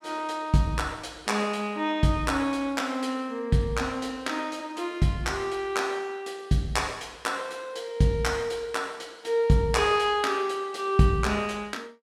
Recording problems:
none

